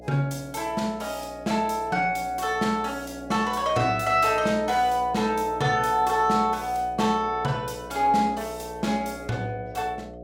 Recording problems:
electrical hum; 60 Hz, harmonics up to 720 Hz, SNR 16 dB

